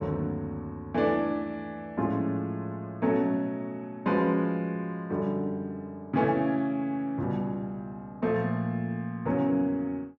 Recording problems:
none

